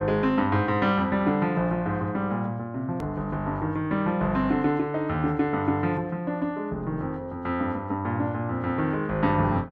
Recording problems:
hard cut with a click; at 3 s

